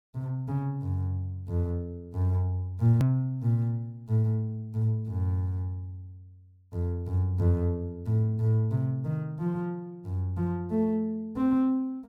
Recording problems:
click at an edit; at 3 s

